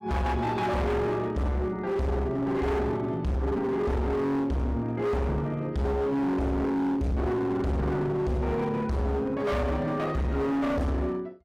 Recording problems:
distortion; hard clipping, signal-to-distortion ratio 7 dB

